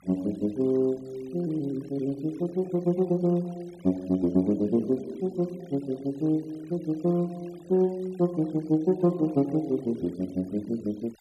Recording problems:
denoising artefacts; signal-to-artefact ratio 27 dB

